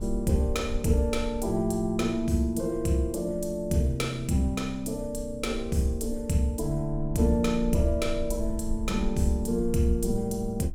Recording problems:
low-frequency rumble; below 54 Hz, SNR 11 dB

